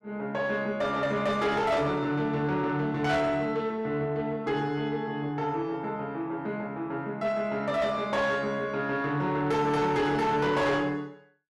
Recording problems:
distortion; soft clipping, signal-to-distortion ratio 10 dB

